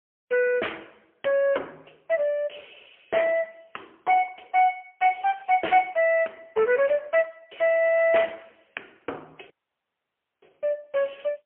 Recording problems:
phone line; 340 Hz to 3.2 kHz, AMR-NB, then MP3
audio cutting out; at 9.5 s for 1 s

